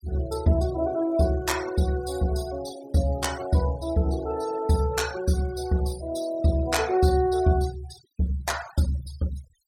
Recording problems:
denoising artefacts; signal-to-artefact ratio 17 dB

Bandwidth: 17 kHz